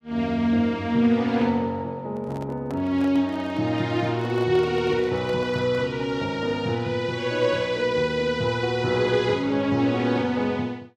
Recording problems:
microphone handling noise; from 2 to 6 s; peak -11 dB vs average level

